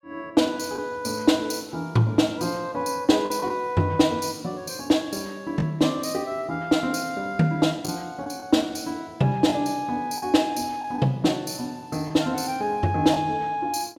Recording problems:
lost packets; 2% of the sound replaced, filled with the last packet

